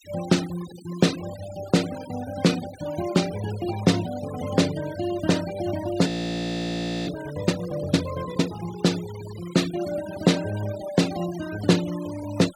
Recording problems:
noise reduction artefacts; signal-to-artefact ratio 15 dB
audio freezing; at 6 s for 1 s

